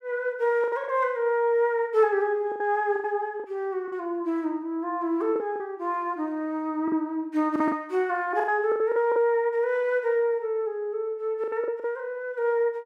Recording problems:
lost packets; 7% of the sound replaced, filled with the last packet

